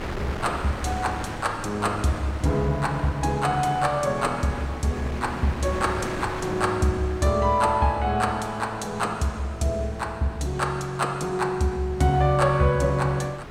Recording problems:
wind on the microphone; below 1.4 kHz, SNR 12 dB

